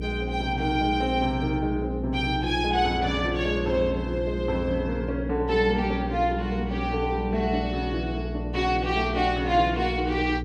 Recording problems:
electrical hum; 60 Hz, harmonics up to 480 Hz, SNR 6 dB

